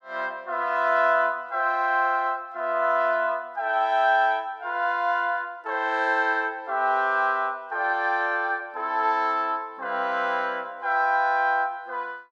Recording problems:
none

